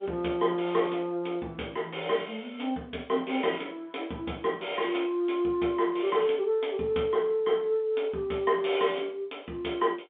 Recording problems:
phone line; 190 Hz to 3.6 kHz, G.711

